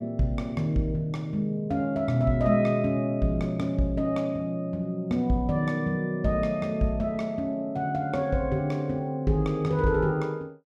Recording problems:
none

